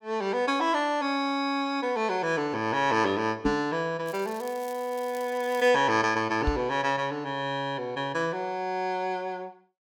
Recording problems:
microphone bump; at 3.5 s and at 6.5 s; peak +3 dB vs average level
crackling; from 4 to 5.5 s; loose cable, SNR 21 dB

